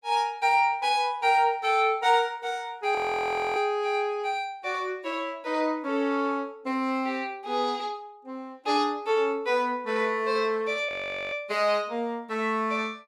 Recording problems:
frozen audio; at 3 s for 0.5 s and at 11 s

